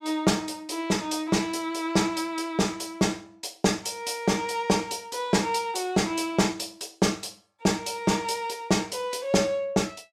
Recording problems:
none

